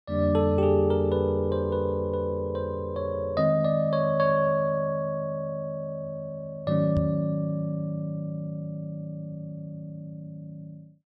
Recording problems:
knock on the microphone; at 7 s; peak +1 dB vs average level

